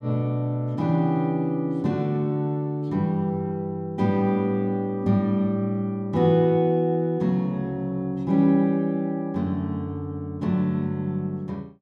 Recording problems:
none

